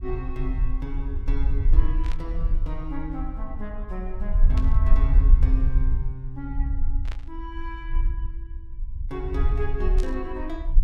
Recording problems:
rumble; below 50 Hz, SNR -9 dB
burst of static; 4 times, first at 2 s; peak -2 dB vs average level

